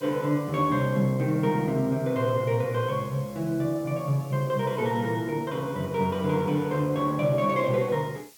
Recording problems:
hiss; slope +1 dB per octave, SNR 25 dB

